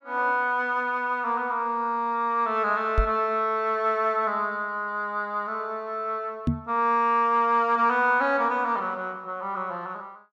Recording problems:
microphone bump; at 3 s and at 6.5 s; peak +4 dB vs average level

